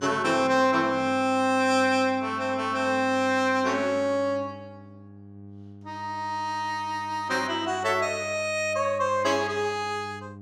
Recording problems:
hum; 50 Hz, harmonics up to 800 Hz, SNR 20 dB

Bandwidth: 15 kHz